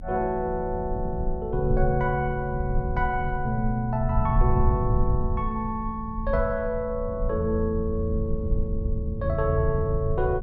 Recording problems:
rumble; below 76 Hz, SNR 5 dB
wind on the microphone; below 100 Hz, SNR 8 dB

